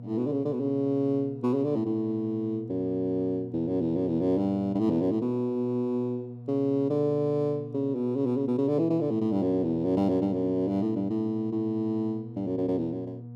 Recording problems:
electrical hum; 60 Hz, harmonics up to 720 Hz, SNR 14 dB

